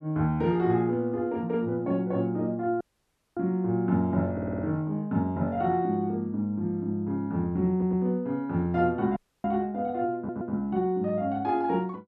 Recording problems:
dropout; at 3 s for 0.5 s and at 9 s
audio stuttering; at 4.5 s, at 7.5 s and at 10 s

